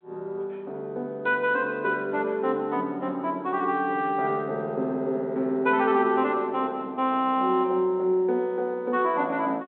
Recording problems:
phone line; 220 Hz to 3.4 kHz, G.726

